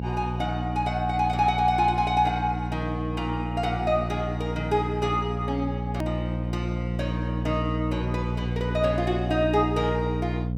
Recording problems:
electrical hum; 60 Hz, harmonics up to 540 Hz, SNR 3 dB
click at an edit; at 6 s

